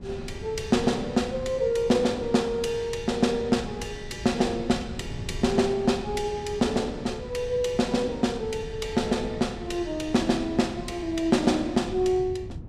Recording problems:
wind noise; below 160 Hz, SNR 14 dB

